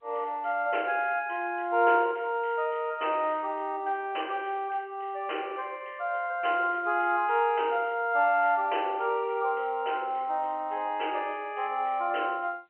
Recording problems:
phone line; 300 Hz to 3.1 kHz, G.711

